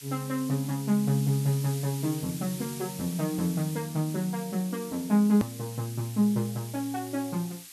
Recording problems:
hiss; SNR 13 dB
click at an edit; at 5.5 s

